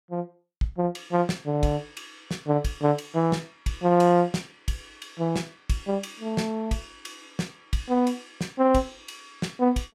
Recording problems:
none

